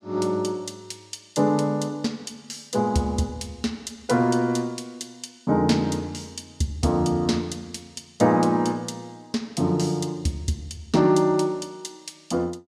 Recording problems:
none

